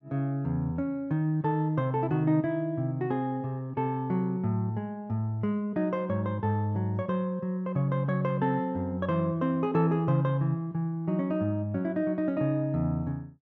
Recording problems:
low-pass filter; nothing above 8 kHz

